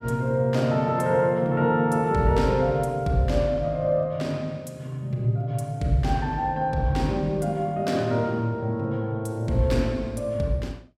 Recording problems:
none

